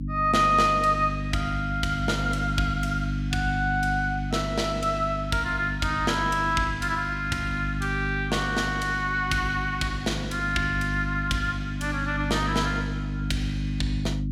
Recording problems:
hum; 50 Hz, harmonics up to 300 Hz, SNR 5 dB

